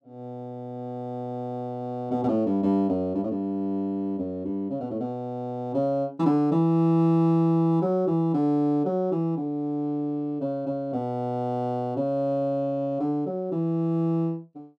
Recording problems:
none

